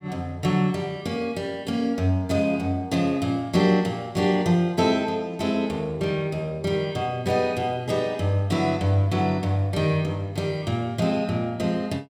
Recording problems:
none

